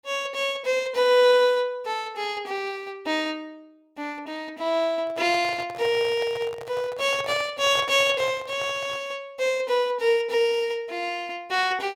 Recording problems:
handling noise; from 5 to 9 s; peak -6 dB vs average level

